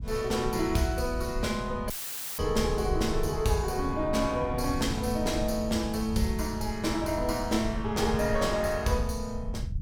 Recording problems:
rumble; below 96 Hz, SNR 8 dB
dropout; at 2 s; filled with static

